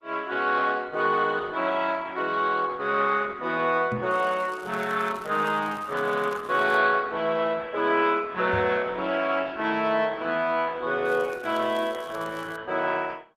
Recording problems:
codec artefacts; Opus, log-spectral distance 4 dB
knock on the microphone; at 4 s and at 8.5 s; peak -1 dB vs average level
crackling; from 4 to 7 s and from 11 to 13 s; loose cable, SNR 25 dB

